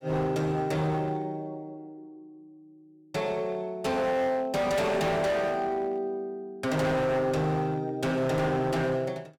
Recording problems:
distortion; hard clipping, signal-to-distortion ratio 8 dB

